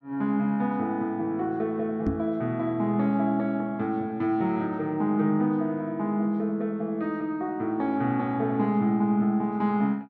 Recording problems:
microphone bump; at 2 s; peak +4 dB vs average level

